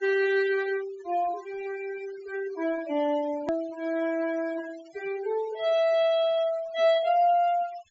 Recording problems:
treble missing; nothing above 8 kHz
denoising artefacts; signal-to-artefact ratio 19 dB
click at an edit; at 3.5 s

